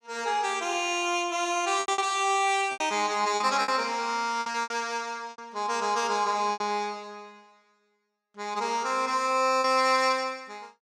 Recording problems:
lost packets; 7% of the sound replaced, filled with repeated pitch periods

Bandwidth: 15.5 kHz